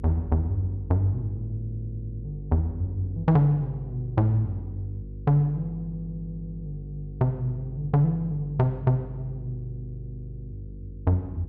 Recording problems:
mains hum; 50 Hz, harmonics up to 500 Hz, SNR 13 dB

